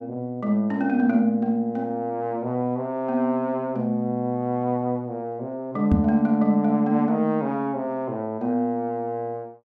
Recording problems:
microphone thump; at 6 s; peak +7 dB vs average level

